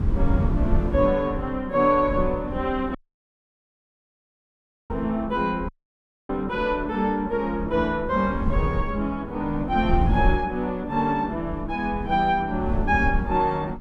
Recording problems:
wind on the microphone; below 100 Hz, SNR 6 dB
dropout; at 3 s for 2 s and at 5.5 s for 0.5 s

